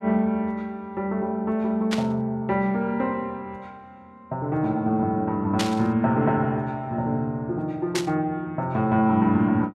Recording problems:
static burst; at 2 s, at 5.5 s and at 8 s; peak +2 dB vs average level

